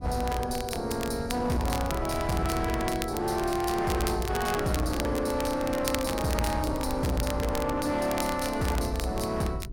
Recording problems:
distortion; hard clipping, signal-to-distortion ratio 11 dB
wind noise; below 140 Hz, SNR 11 dB
crackling; vinyl, SNR 10 dB

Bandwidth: 16.5 kHz